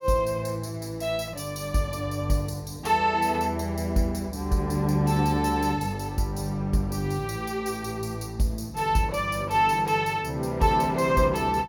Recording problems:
none

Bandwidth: 17.5 kHz